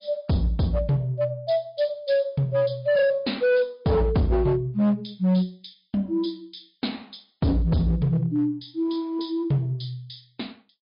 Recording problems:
treble cut off; nothing above 5.2 kHz
codec artefacts; MP3, log-spectral distance 3 dB
distortion; hard clipping, signal-to-distortion ratio 10 dB

